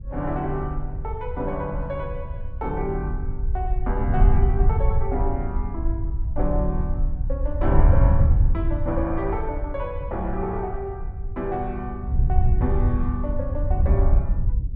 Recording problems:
low-frequency rumble; below 58 Hz, SNR 3 dB
wind on the microphone; below 84 Hz, SNR -4 dB

